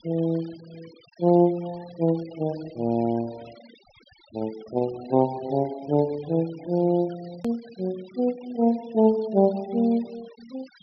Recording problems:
treble missing; nothing above 5.5 kHz
denoising artefacts; signal-to-artefact ratio 24 dB
edit click; at 7.5 s

